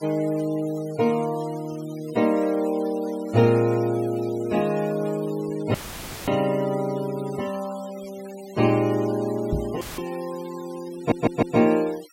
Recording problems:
denoising artefacts; signal-to-artefact ratio 20 dB
dropout; at 5.5 s for 0.5 s and at 10 s; filled with static
microphone thump; at 9.5 s; peak +2 dB vs average level
audio stuttering; at 11 s

